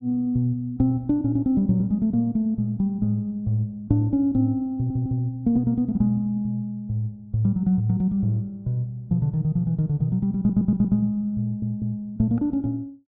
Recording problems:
stutter; at 5 s, at 10 s and at 11 s

